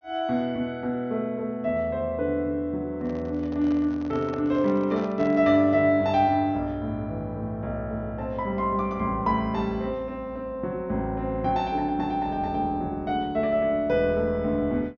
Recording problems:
treble missing; nothing above 6.5 kHz
handling noise; from 3 to 5.5 s; peak -9 dB vs average level

